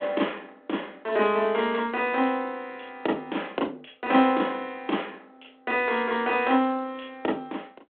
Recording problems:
telephone audio; 260 Hz to 3.5 kHz, G.726

